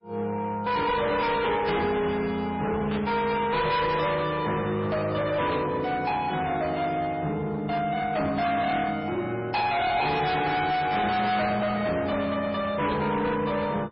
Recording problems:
codec artefacts; MP3, log-spectral distance 3 dB, nothing above 5.3 kHz
distortion; hard clipping, uneven, signal-to-distortion ratio 7 dB
burst of static; 5 times, first at 1.5 s; peak -7 dB vs average level

